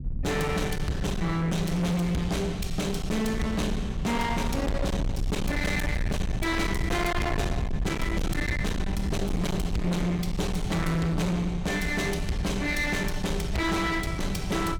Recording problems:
distortion; hard clipping, signal-to-distortion ratio 6 dB
low-frequency rumble; below 160 Hz, SNR 5 dB

